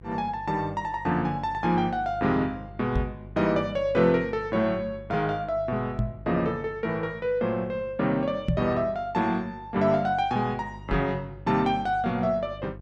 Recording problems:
hum; 50 Hz, harmonics up to 700 Hz, SNR 18 dB
microphone thump; 4 times, first at 3 s; peak +5 dB vs average level

